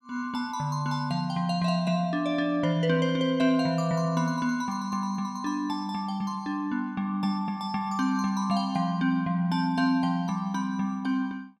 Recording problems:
none

